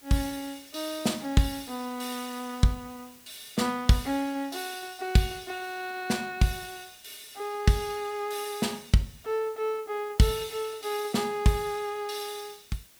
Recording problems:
background hiss; slope 0 dB per octave, SNR 23 dB

